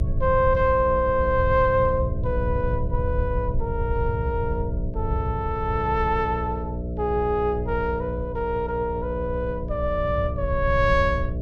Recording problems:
electrical hum; 60 Hz, harmonics up to 660 Hz, SNR 8 dB
rumble; below 100 Hz, SNR 6 dB

